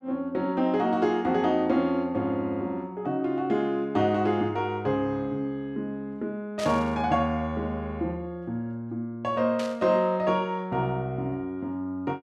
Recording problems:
static burst; at 6.5 s and at 9.5 s; peak -5 dB vs average level

